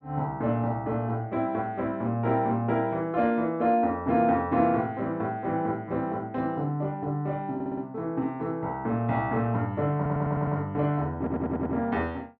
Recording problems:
stutter; at 7.5 s, at 10 s and at 11 s

